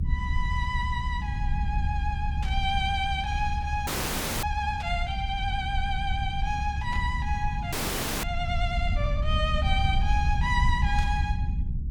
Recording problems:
rumble; below 86 Hz, SNR 0 dB
static burst; 4 times, first at 2.5 s; peak -7 dB vs average level
frozen audio; at 4 s for 0.5 s and at 7.5 s for 0.5 s

